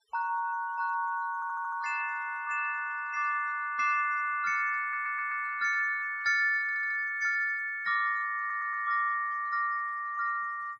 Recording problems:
denoising artefacts; signal-to-artefact ratio 27 dB
audio stuttering; 4 times, first at 1.5 s

